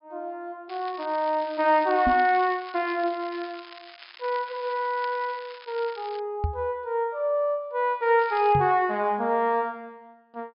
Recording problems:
low-pass filter; nothing above 5.5 kHz
crackle; from 0.5 to 6 s and at 8 s; loose cable, SNR 20 dB
microphone thump; at 2 s, at 6.5 s and at 8.5 s; peak +2 dB vs average level

